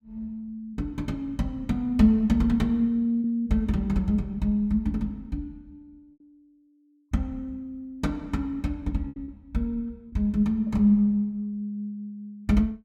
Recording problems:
packet loss; 1.8% of the sound replaced, filled with repeated pitch periods

